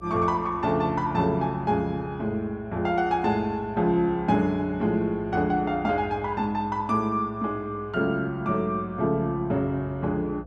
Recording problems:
electrical hum; 60 Hz, harmonics up to 720 Hz, SNR 22 dB

